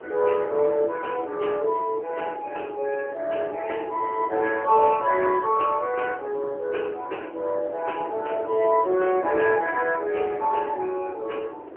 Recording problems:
phone line; 280 Hz to 3.1 kHz, AMR-NB
wind noise; below 570 Hz, SNR 14 dB

